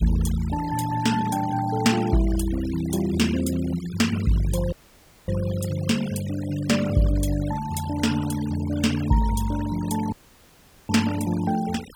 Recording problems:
denoising artefacts; signal-to-artefact ratio 15 dB
audio cutting out; at 4.5 s for 0.5 s and at 10 s for 1 s

